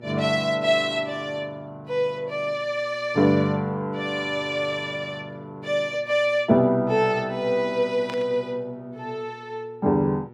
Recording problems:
electrical hum; 60 Hz, harmonics up to 1.3 kHz, SNR 24 dB
static burst; at 8 s; peak -9 dB vs average level

